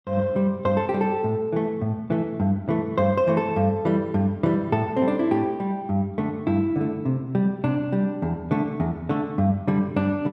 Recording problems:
none

